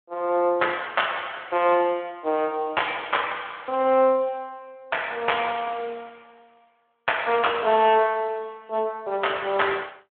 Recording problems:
phone line; 280 Hz to 3.4 kHz, Speex

